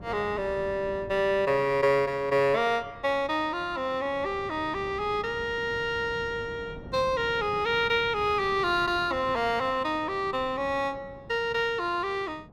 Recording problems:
wind noise; below 370 Hz, SNR 18 dB

